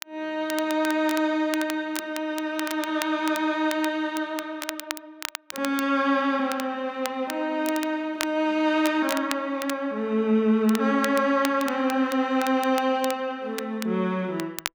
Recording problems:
crackling; vinyl, SNR 12 dB

